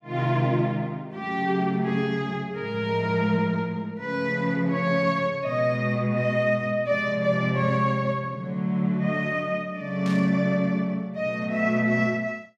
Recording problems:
static burst; at 10 s; peak -11 dB vs average level

